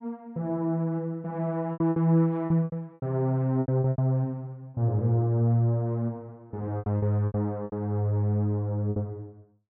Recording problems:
lost packets; 10% of the sound replaced, filled with repeated pitch periods

